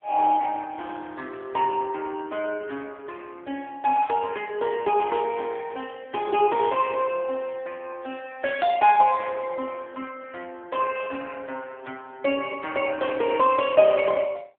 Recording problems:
telephone audio; 240 Hz to 3.6 kHz, AMR-NB

